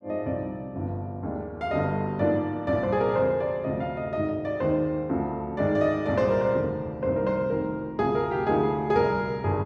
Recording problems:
none

